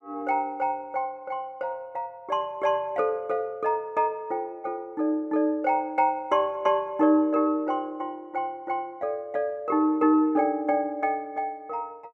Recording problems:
none

